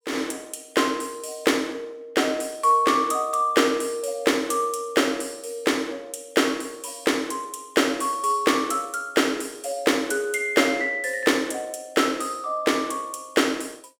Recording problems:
none

